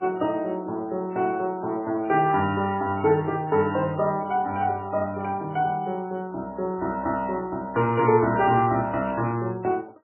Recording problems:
codec artefacts; MP3, log-spectral distance 2 dB, nothing above 2.8 kHz
static burst; at 9 s; peak -17 dB vs average level

